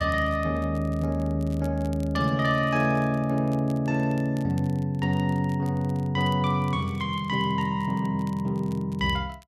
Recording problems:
crackle; vinyl, SNR 28 dB

